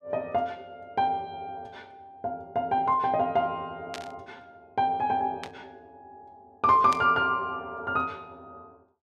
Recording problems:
burst of static; at 4 s, at 5.5 s and at 7 s; peak -5 dB vs average level

